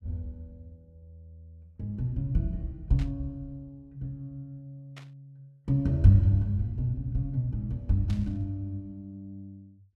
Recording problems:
burst of static; at 3 s, at 5 s and at 8 s; peak -14 dB vs average level

